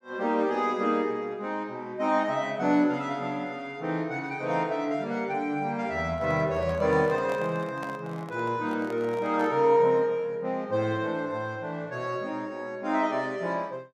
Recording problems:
microphone handling noise; from 6 to 9.5 s; peak -6 dB vs average level

